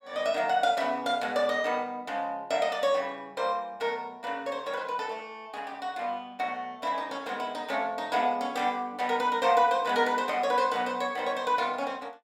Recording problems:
none

